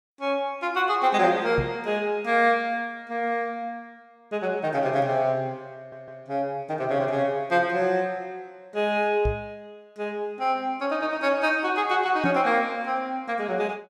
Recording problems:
knock on the microphone; at 1.5 s, at 9.5 s and at 12 s; peak +2 dB vs average level
stutter; at 6 s

